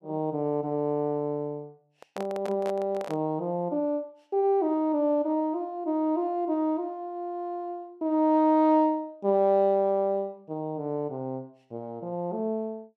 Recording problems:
handling noise; from 2 to 3.5 s; peak -6 dB vs average level

